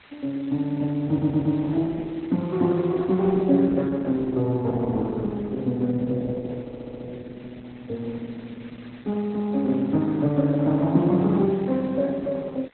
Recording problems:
lossy codec; MP2, then Opus, log-spectral distance 4 dB
background hiss; SNR 27 dB
audio stuttering; at 1 s and at 6.5 s

